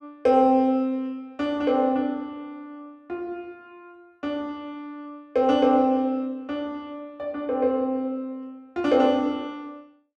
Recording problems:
none

